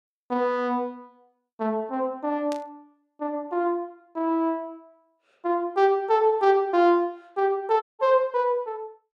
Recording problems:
burst of static; at 2.5 s; peak -11 dB vs average level
dropout; at 8 s

